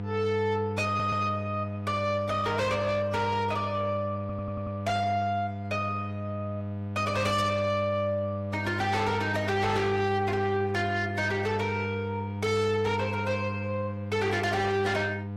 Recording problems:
lossy codec; AAC, log-spectral distance 2 dB, nothing above 15.5 kHz
distorted audio; soft clipping, signal-to-distortion ratio 7 dB
electrical hum; 50 Hz, harmonics up to 1.2 kHz, SNR 6 dB
stutter; at 1 s and at 4 s

